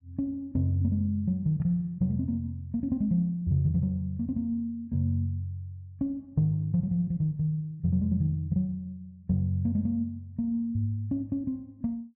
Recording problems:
none

